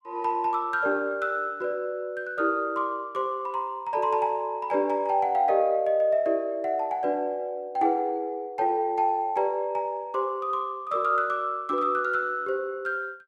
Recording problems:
none

